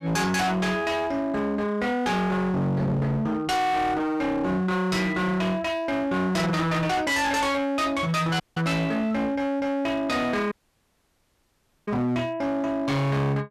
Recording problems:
distorted audio; hard clipping, signal-to-distortion ratio 7 dB
dropout; at 8.5 s and at 11 s for 1.5 s

